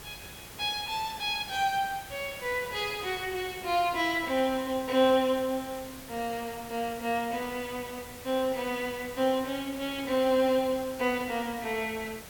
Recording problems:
background hiss; slope -3 dB per octave, SNR 14 dB

